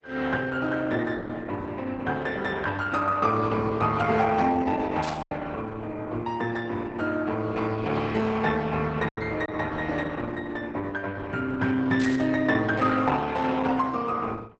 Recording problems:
codec artefacts; Opus, log-spectral distance 3 dB, nothing above 8 kHz
packet loss; 1.2% of the sound replaced, filled with silence
static burst; at 5 s and at 12 s; peak -6 dB vs average level

